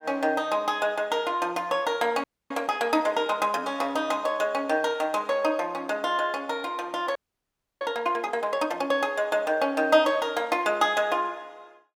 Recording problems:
audio freezing; at 2 s and at 7 s for 0.5 s

